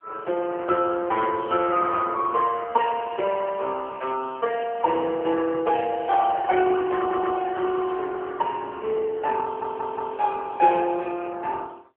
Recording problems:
phone line; 320 Hz to 2.8 kHz, AMR-NB
audio stuttering; at 7 s and at 9.5 s
crackle; at 7.5 s; loose cable, SNR 28 dB

